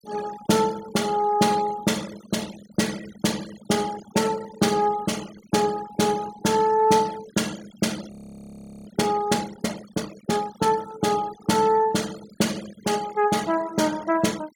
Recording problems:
noise reduction artefacts; signal-to-artefact ratio 17 dB
frozen audio; at 8 s for 0.5 s

